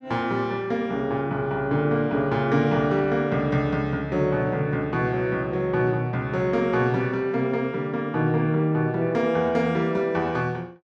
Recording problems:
none

